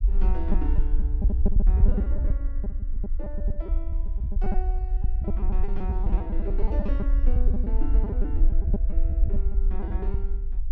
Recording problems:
low-frequency rumble; below 54 Hz, SNR -12 dB
packet loss; 15% of the sound replaced, filled with repeated pitch periods

